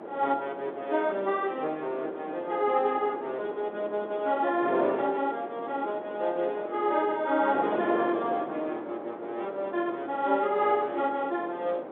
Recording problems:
telephone audio; 240 Hz to 3.7 kHz, G.711
wind on the microphone; below 730 Hz, SNR 9 dB

